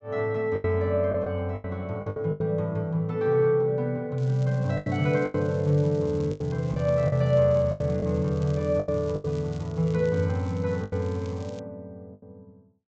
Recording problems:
treble cut off; nothing above 8 kHz
lost packets; 9% of the sound replaced, filled with the last packet
crackling; from 4 to 12 s; loose cable, SNR 27 dB

